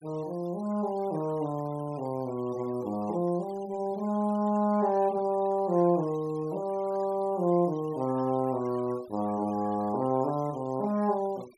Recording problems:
denoising artefacts; signal-to-artefact ratio 24 dB

